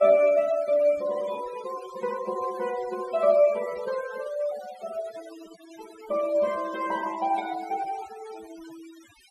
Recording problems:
denoising artefacts; signal-to-artefact ratio 18 dB

